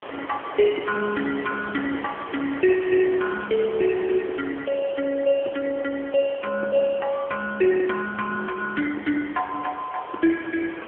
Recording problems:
phone line; 300 Hz to 2.3 kHz, AMR-NB
background hiss; SNR 14 dB

